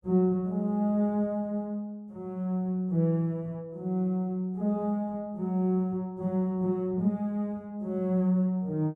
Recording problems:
none

